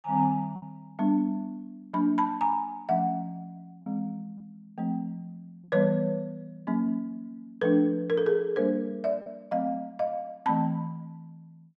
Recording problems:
lost packets; 1.4% of the sound replaced, filled with repeated pitch periods

